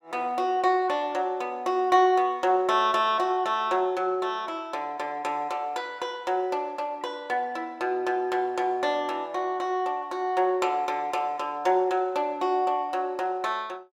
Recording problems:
none

